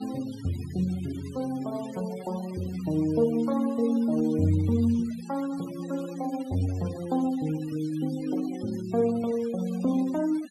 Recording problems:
denoising artefacts; signal-to-artefact ratio 20 dB

